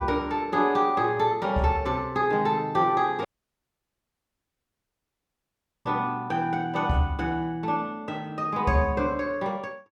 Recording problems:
audio cutting out; at 3.5 s for 2.5 s

